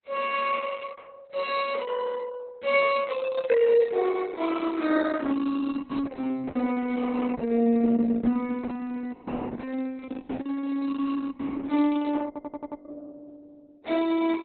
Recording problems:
lossy codec; MP3, then Opus, log-spectral distance 3 dB, nothing above 4.1 kHz
stutter; at 12 s

